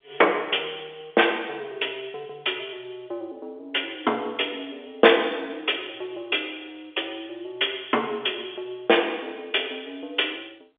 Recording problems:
telephone audio; 280 Hz to 3.6 kHz, G.711

